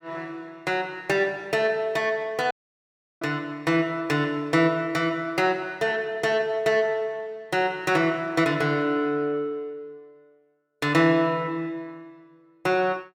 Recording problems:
audio cutting out; at 2.5 s for 0.5 s

